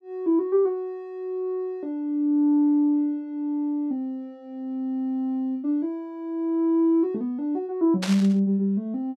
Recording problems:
static burst; at 8 s; peak -1 dB vs average level

